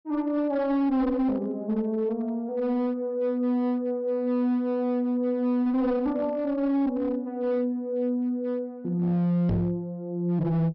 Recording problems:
low-pass filter; nothing above 5.6 kHz
distorted audio; hard clipping, uneven, signal-to-distortion ratio 11 dB
knock on the microphone; at 9.5 s; peak +4 dB vs average level

